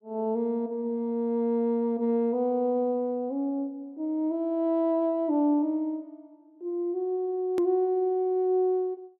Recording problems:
click at an edit; at 7.5 s

